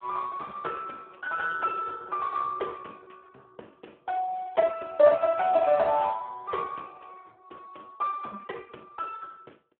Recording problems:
telephone audio; 260 Hz to 2 kHz, Speex

